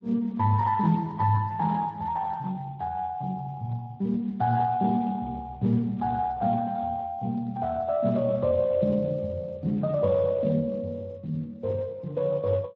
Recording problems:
lossy compression; Speex, log-spectral distance 2 dB

